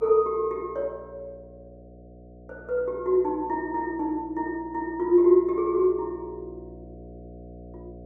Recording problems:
hum; 60 Hz, harmonics up to 720 Hz, SNR 22 dB

